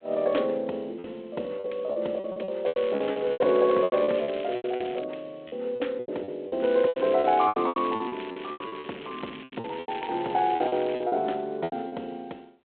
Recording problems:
telephone audio; 280 Hz to 3.6 kHz, G.726
lost packets; 16% of the sound replaced, filled with repeated pitch periods
crackle; from 2.5 to 5 s and from 6.5 to 11 s; loose cable, SNR 17 dB

